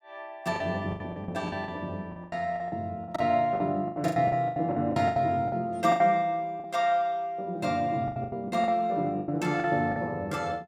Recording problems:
lost packets; 15% of the sound replaced, filled with the last packet

